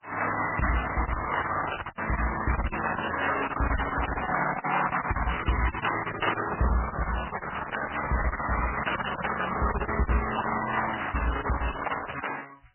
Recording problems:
codec artefacts; Opus, then MP3, log-spectral distance 8 dB, nothing above 3 kHz
lost packets; 11% of the sound replaced, filled with silence

